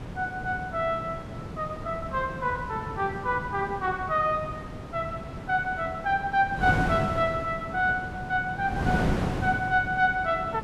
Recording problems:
wind noise; below 510 Hz, SNR 7 dB

